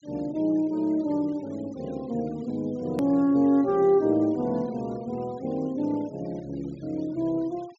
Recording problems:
low-pass filter; nothing above 8 kHz
noise reduction artefacts; signal-to-artefact ratio 27 dB
hard cut with a click; at 3 s

